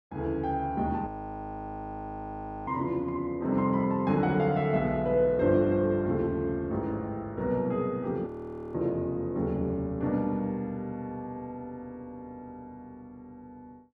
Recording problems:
frozen audio; at 1 s for 1.5 s and at 8.5 s

